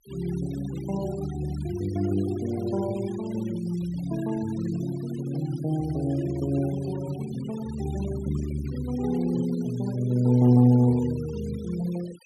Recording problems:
denoising artefacts; signal-to-artefact ratio 21 dB

